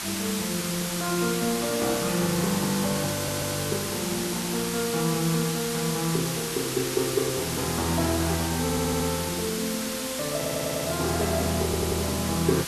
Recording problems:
hiss; slope +1 dB per octave, SNR 2 dB
audio stuttering; 4 times, first at 3 s

